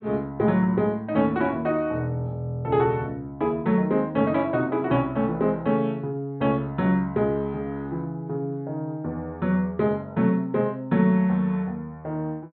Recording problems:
treble missing; nothing above 4.2 kHz

